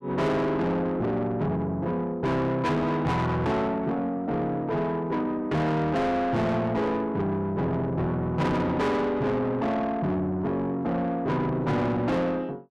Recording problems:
distortion; soft clipping, signal-to-distortion ratio 7 dB

